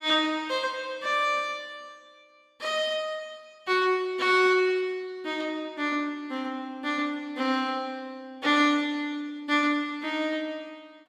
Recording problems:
none

